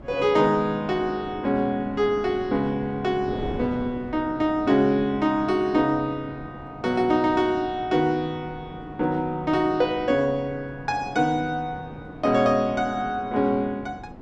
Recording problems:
wind noise; below 420 Hz, SNR 17 dB

